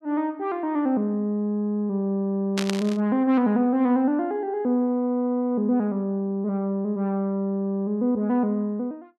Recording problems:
static burst; at 2.5 s; peak 0 dB vs average level

